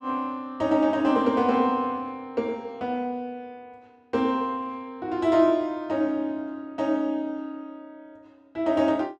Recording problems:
none

